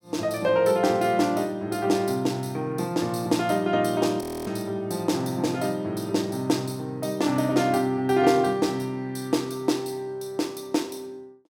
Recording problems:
audio freezing; at 4 s

